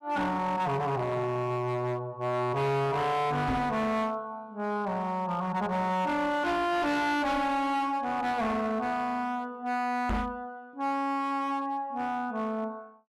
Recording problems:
distortion; hard clipping, signal-to-distortion ratio 8 dB
microphone bump; at 3.5 s and at 10 s; peak +4 dB vs average level

